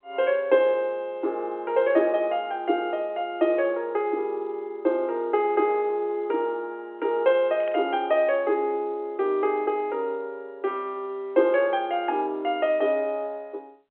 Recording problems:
telephone audio; 280 Hz to 3.4 kHz, G.711
static burst; at 7.5 s; peak -13 dB vs average level

